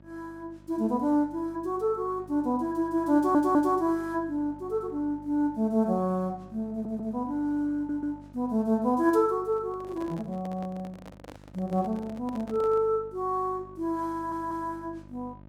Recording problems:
mains hum; 50 Hz, harmonics up to 1.3 kHz, SNR 22 dB
stutter; 4 times, first at 3 s
microphone handling noise; from 9.5 to 13 s; peak -12 dB vs average level

